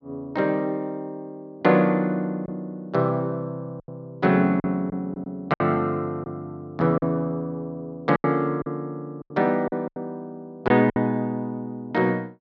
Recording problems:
packet loss; 6% of the sound replaced, filled with silence

